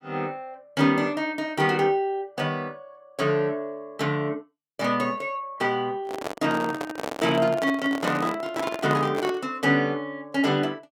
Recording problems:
handling noise; from 6 to 9.5 s; peak +1 dB vs average level

